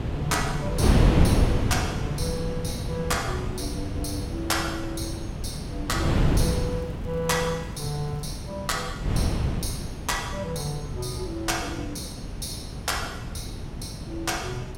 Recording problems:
wind on the microphone; below 250 Hz, SNR -1 dB
crackling; from 6 to 8.5 s; loose cable, SNR 29 dB

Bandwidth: 16.5 kHz